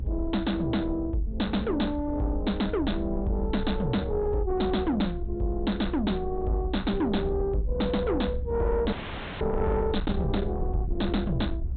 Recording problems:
low-pass filter; nothing above 4 kHz
distortion; soft clipping, signal-to-distortion ratio 10 dB
low-frequency rumble; below 76 Hz, SNR 7 dB
audio cutting out; at 9 s

